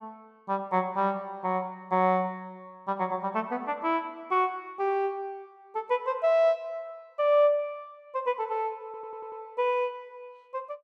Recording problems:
audio stuttering; at 9 s

